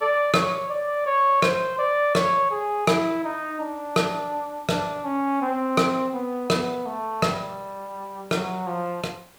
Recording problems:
background hiss; slope -3 dB per octave, SNR 27 dB

